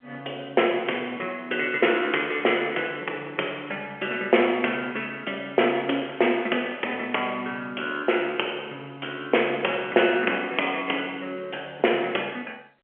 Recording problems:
telephone audio; 300 Hz to 3.2 kHz, G.711

